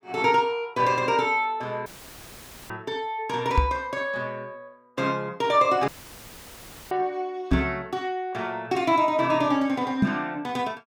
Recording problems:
dropout; at 2 s for 1 s and at 6 s for 1 s; filled with static
microphone thump; at 3.5 s, at 7.5 s and at 10 s; peak +8 dB vs average level

